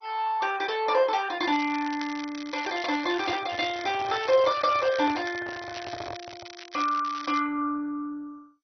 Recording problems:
lossy codec; MP2, log-spectral distance 8 dB, nothing above 5.7 kHz
crackling; from 1.5 to 3.5 s, from 3.5 to 5.5 s and from 5.5 to 7.5 s; loose cable, SNR 15 dB
handling noise; from 3 to 6.5 s; peak -7 dB vs average level

